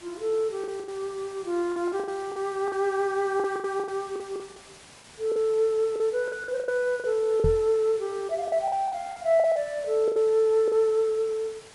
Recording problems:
codec artefacts; MP3, log-spectral distance 3 dB
hiss; slope -2 dB per octave, SNR 21 dB
packet loss; 12% of the sound replaced, filled with the last packet
microphone thump; at 7.5 s; peak +3 dB vs average level

